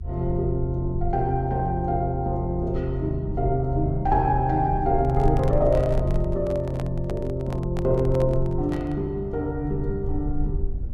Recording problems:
rumble; below 78 Hz, SNR 7 dB
handling noise; from 5 to 9 s; peak -7 dB vs average level

